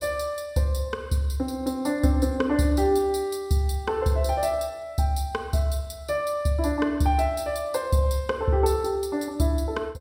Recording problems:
none

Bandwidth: 16 kHz